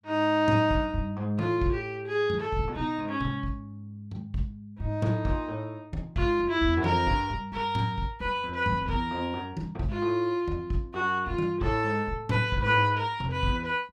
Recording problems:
none

